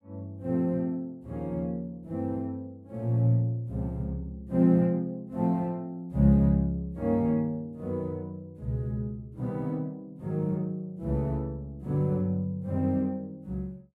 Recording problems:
none

